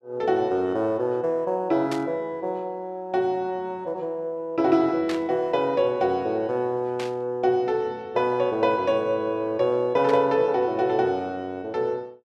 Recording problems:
static burst; 4 times, first at 2 s; peak -5 dB vs average level

